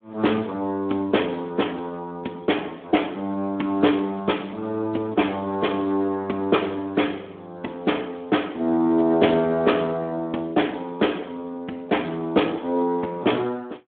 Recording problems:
phone line; 220 Hz to 3.4 kHz, Speex

